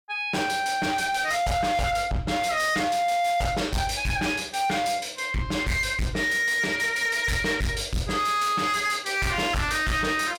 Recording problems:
distorted audio; hard clipping, uneven, signal-to-distortion ratio 8 dB

